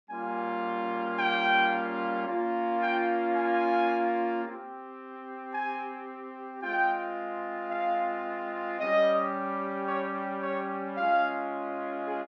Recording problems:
none

